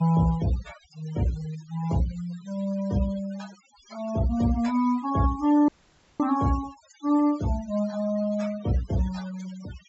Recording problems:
low-pass filter; nothing above 7.7 kHz
noise reduction artefacts; signal-to-artefact ratio 18 dB
dropout; at 5.5 s for 0.5 s

